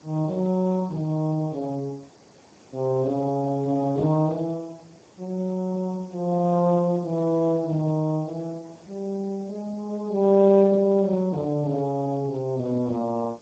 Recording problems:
lossy codec; Speex, log-spectral distance 4 dB
background hiss; SNR 27 dB

